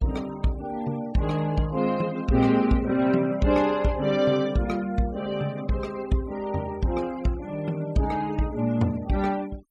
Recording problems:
denoising artefacts; signal-to-artefact ratio 23 dB

